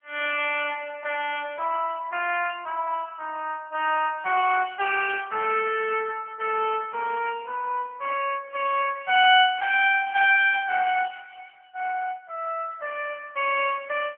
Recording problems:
telephone audio; 370 Hz to 3.2 kHz, AMR-NB
static burst; at 4.5 s and at 8 s; peak -18 dB vs average level

